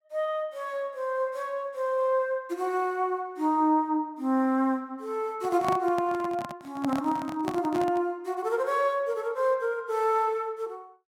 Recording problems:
handling noise; from 5.5 to 8 s; peak 0 dB vs average level

